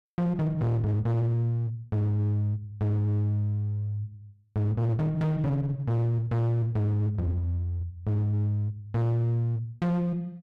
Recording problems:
distortion; hard clipping, uneven, signal-to-distortion ratio 6 dB

